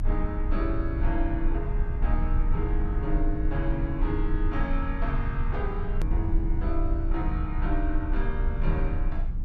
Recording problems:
low-frequency rumble; below 54 Hz, strongest tone 28 Hz, SNR -3 dB
edit click; at 6 s

